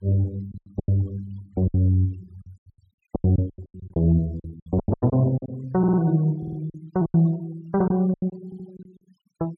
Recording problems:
denoising artefacts; signal-to-artefact ratio 28 dB
lost packets; 16% of the sound replaced, filled with silence
audio stuttering; at 6 s, at 6.5 s and at 8.5 s

